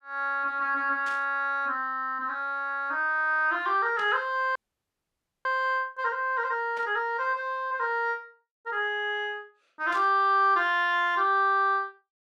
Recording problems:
static burst; 4 times, first at 1 s; peak -13 dB vs average level
frozen audio; at 4.5 s for 1 s

